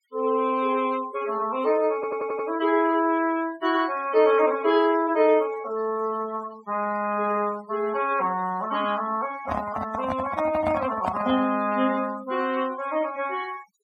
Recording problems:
noise reduction artefacts; signal-to-artefact ratio 17 dB
audio stuttering; at 2 s
handling noise; from 9.5 to 11 s; peak +1 dB vs average level

